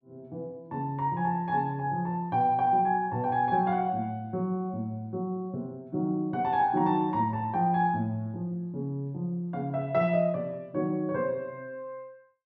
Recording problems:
none

